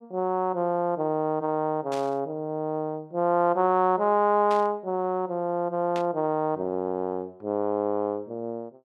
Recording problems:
static burst; at 2 s, at 4.5 s and at 6 s; peak -8 dB vs average level

